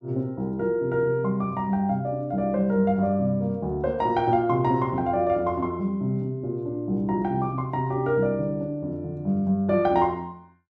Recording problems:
none

